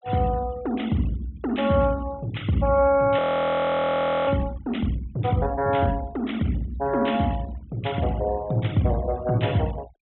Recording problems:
treble missing; nothing above 3.9 kHz
denoising artefacts; signal-to-artefact ratio 22 dB
audio freezing; at 3 s for 1 s

